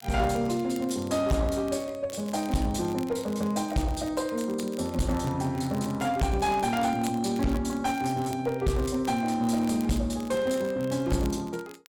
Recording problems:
distorted audio; hard clipping, uneven, signal-to-distortion ratio 11 dB
crackle; vinyl, SNR 21 dB

